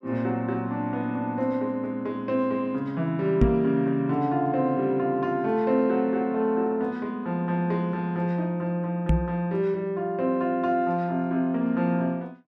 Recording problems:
knock on the microphone; at 3.5 s and at 9 s; peak +8 dB vs average level

